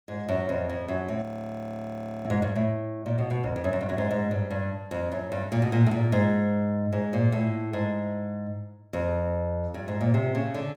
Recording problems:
frozen audio; at 1 s for 1 s

